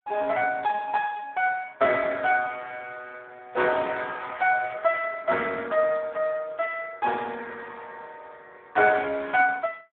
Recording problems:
telephone audio; 300 Hz to 3 kHz, Speex

